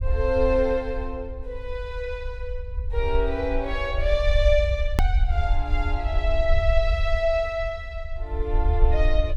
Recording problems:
low-frequency rumble; below 62 Hz, SNR 1 dB
hard cut with a click; at 5 s

